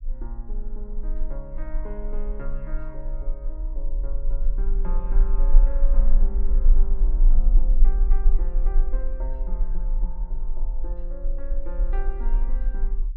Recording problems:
low-frequency rumble; below 34 Hz, strongest tone 24 Hz, SNR -14 dB

